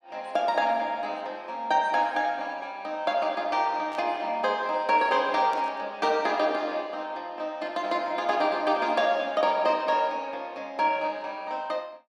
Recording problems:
burst of static; at 4 s and at 5.5 s; peak -14 dB vs average level

